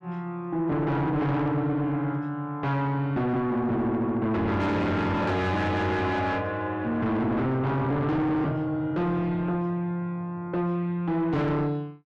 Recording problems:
distortion; soft clipping, signal-to-distortion ratio 6 dB

